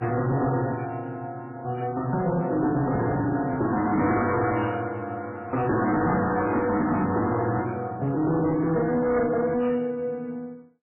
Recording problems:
lossy compression; MP3, log-spectral distance 3 dB, nothing above 2.8 kHz
distortion; hard clipping, signal-to-distortion ratio 11 dB
handling noise; from 2.5 to 4 s; peak +1 dB vs average level

